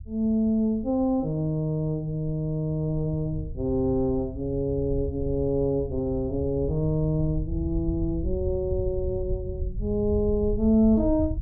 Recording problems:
rumble; below 90 Hz, SNR 9 dB

